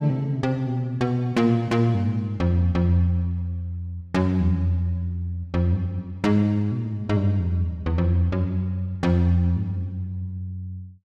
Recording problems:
none

